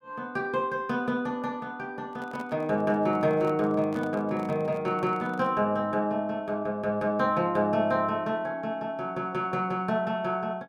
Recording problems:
microphone handling noise; from 2 to 5.5 s; peak -10 dB vs average level

